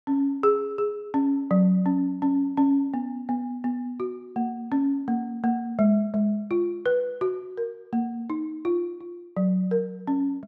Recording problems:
none

